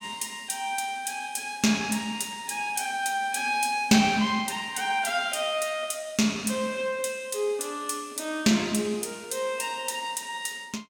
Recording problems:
none

